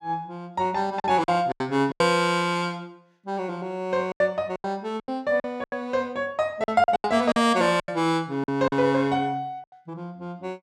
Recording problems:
packet loss; 10% of the sound replaced, filled with silence

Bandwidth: 16.5 kHz